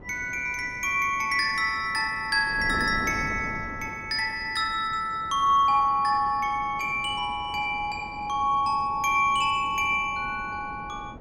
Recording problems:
wind on the microphone; below 430 Hz, SNR 17 dB

